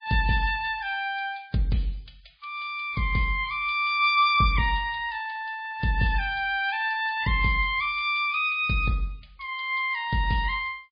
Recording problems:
lossy codec; MP3, log-spectral distance 4 dB, nothing above 4.8 kHz

